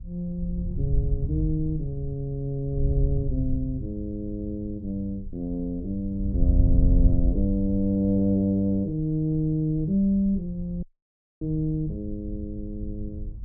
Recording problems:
wind on the microphone; below 76 Hz, SNR 3 dB
dropout; at 11 s for 0.5 s

